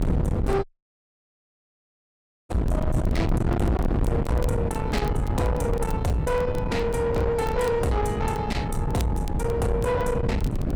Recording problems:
distortion; soft clipping, signal-to-distortion ratio 6 dB
wind noise; below 290 Hz, SNR 1 dB
crackling; vinyl, SNR 23 dB
dropout; at 0.5 s for 2 s

